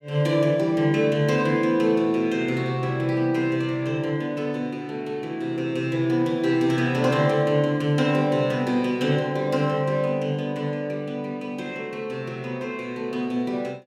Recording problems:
none

